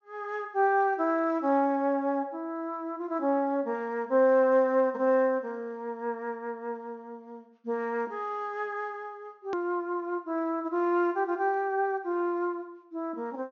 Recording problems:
treble missing; nothing above 6.7 kHz
hard cut with a click; at 9.5 s

